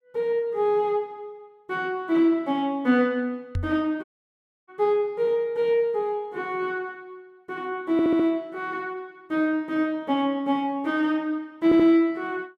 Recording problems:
microphone bump; at 3.5 s; peak 0 dB vs average level
dropout; at 4 s for 0.5 s
audio stuttering; at 8 s and at 12 s

